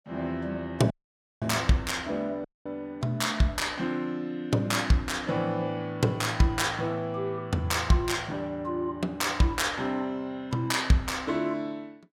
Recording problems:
audio cutting out; at 1 s for 0.5 s and at 2.5 s

